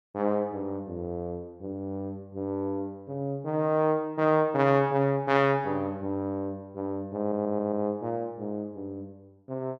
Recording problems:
audio stuttering; at 7 s

